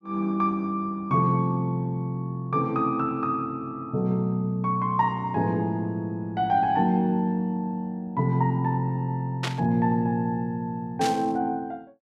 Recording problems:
burst of static; at 9.5 s and at 11 s; peak 0 dB vs average level

